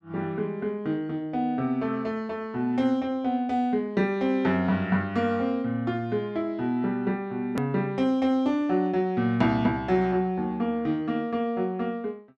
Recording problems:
edit click; at 7.5 s

